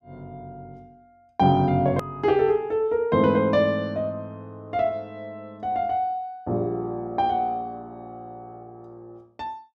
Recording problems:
click at an edit; at 2 s

